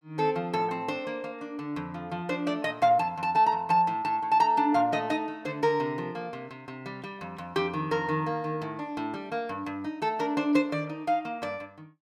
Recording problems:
none

